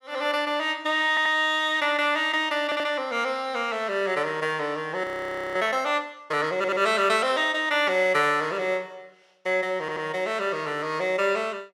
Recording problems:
stutter; 4 times, first at 1 s
audio freezing; at 5 s for 0.5 s

